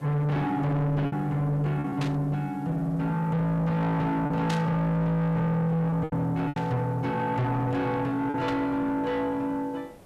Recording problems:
distortion; soft clipping, signal-to-distortion ratio 8 dB
hiss; slope -8 dB per octave, SNR 26 dB
lost packets; 4% of the sound replaced, filled with repeated pitch periods
burst of static; 4 times, first at 2 s; peak -3 dB vs average level

